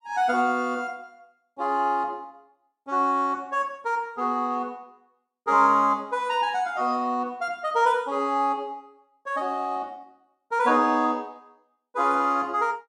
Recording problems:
none

